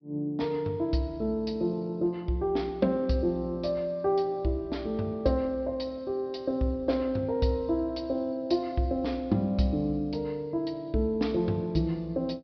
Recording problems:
treble missing; nothing above 5.5 kHz

